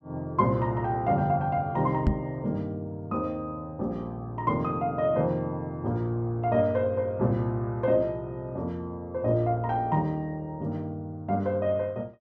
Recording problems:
knock on the microphone; at 2 s; peak +7 dB vs average level

